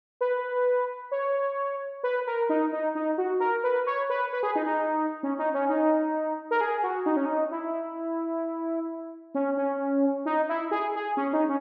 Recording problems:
none

